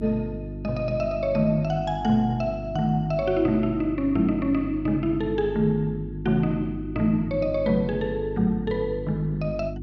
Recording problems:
electrical hum; 50 Hz, harmonics up to 350 Hz, SNR 10 dB

